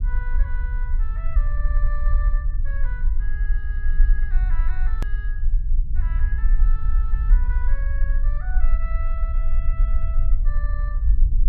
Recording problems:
rumble; below 42 Hz, strongest tone 20 Hz, SNR -16 dB
edit click; at 5 s

